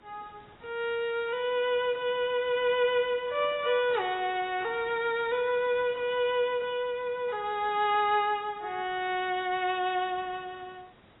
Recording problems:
lossy compression; AAC, log-spectral distance 4 dB, nothing above 3.3 kHz
hiss; SNR 28 dB

